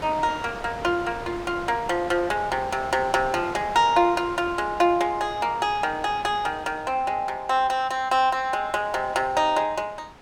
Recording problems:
wind on the microphone; below 1.6 kHz, SNR 16 dB

